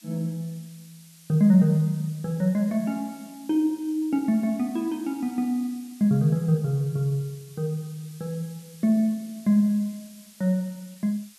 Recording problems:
hiss; slope +3 dB per octave, SNR 24 dB

